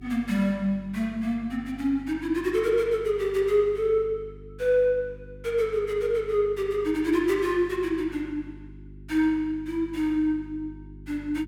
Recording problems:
hum; 50 Hz, harmonics up to 400 Hz, SNR 20 dB

